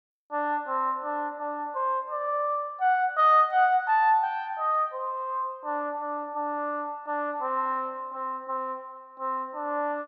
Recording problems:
none

